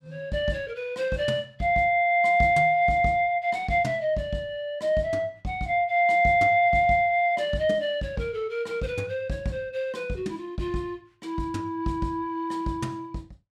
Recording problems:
none

